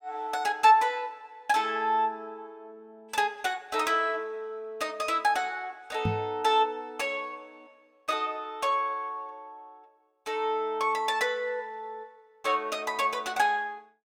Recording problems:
microphone thump; at 6 s; peak +3 dB vs average level

